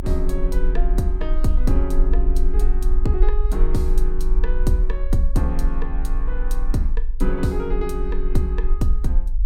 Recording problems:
rumble; below 40 Hz, strongest tone 20 Hz, SNR -3 dB

